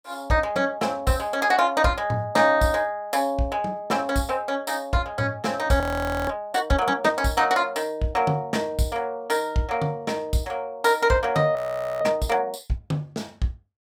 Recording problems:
frozen audio; at 6 s and at 12 s

